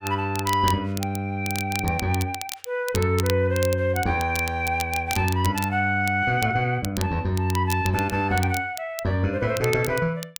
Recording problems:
crackling; vinyl, SNR 12 dB

